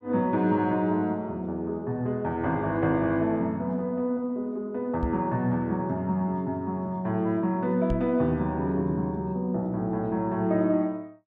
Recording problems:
microphone thump; at 5 s and at 8 s; peak +1 dB vs average level

